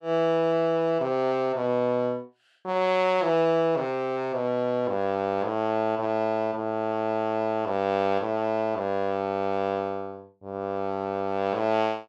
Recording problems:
none

